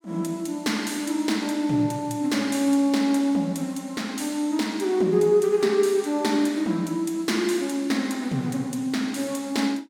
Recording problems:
none

